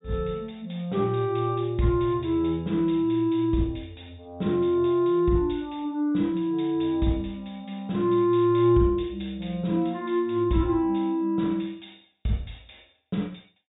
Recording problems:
low-pass filter; nothing above 4 kHz

